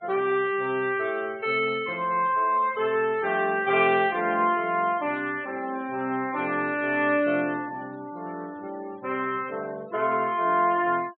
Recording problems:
treble missing; nothing above 4 kHz
denoising artefacts; signal-to-artefact ratio 25 dB

